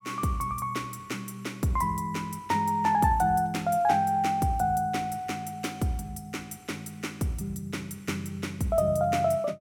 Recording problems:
none

